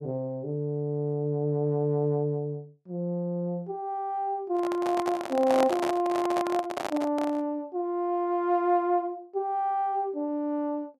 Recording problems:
handling noise; from 4.5 to 7.5 s; peak +3 dB vs average level

